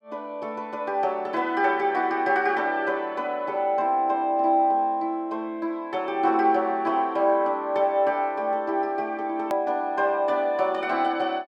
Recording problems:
edit click; at 9.5 s

